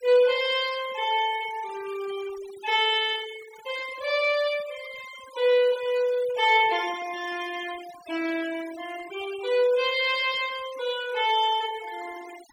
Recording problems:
noise reduction artefacts; signal-to-artefact ratio 17 dB

